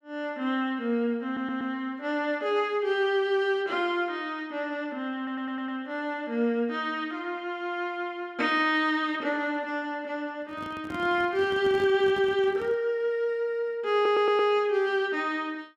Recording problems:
audio stuttering; at 1.5 s, at 5 s and at 14 s
handling noise; from 10 to 13 s; peak -8 dB vs average level

